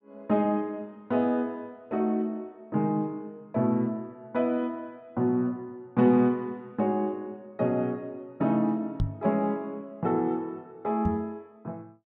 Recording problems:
microphone bump; at 9 s and at 11 s; peak +4 dB vs average level

